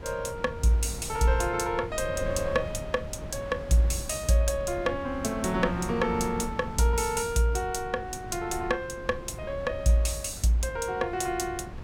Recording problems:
wind noise; below 250 Hz, SNR 12 dB

